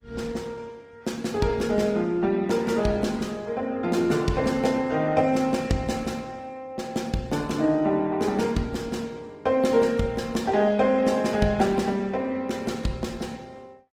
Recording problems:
lossy codec; Opus, log-spectral distance 3 dB, nothing above 18.5 kHz

